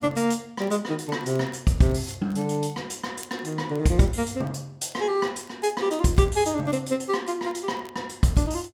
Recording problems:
crackling; vinyl, SNR 29 dB

